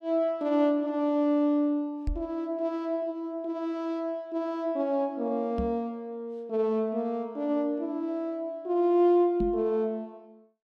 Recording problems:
microphone bump; at 2 s, at 5.5 s and at 9.5 s; peak 0 dB vs average level

